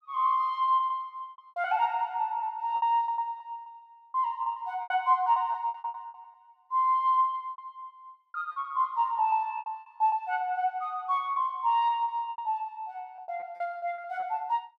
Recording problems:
lost packets; 14% of the sound replaced, filled with repeated pitch periods

